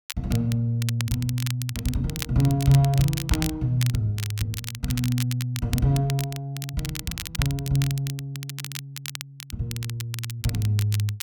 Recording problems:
crackle; vinyl, SNR 10 dB

